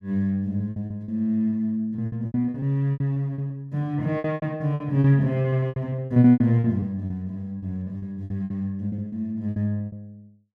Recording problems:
lost packets; 17% of the sound replaced, filled with repeated pitch periods

